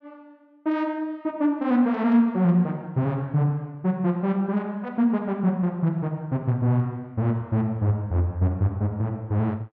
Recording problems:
none

